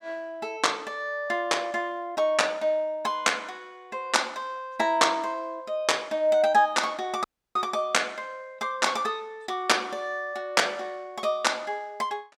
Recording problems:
dropout; at 7 s

